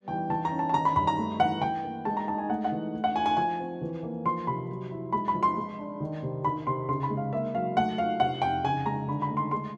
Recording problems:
none

